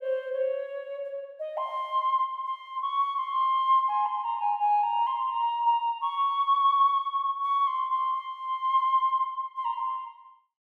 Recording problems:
none

